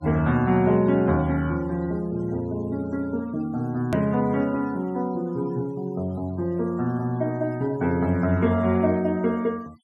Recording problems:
noise reduction artefacts; signal-to-artefact ratio 26 dB
edit click; at 4 s

